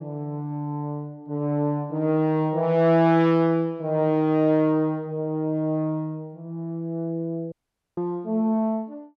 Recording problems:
audio cutting out; at 7.5 s

